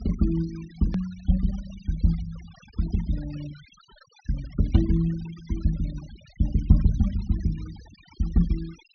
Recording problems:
treble missing; nothing above 6.3 kHz
noise reduction artefacts; signal-to-artefact ratio 22 dB
hard cut with a click; at 1 s

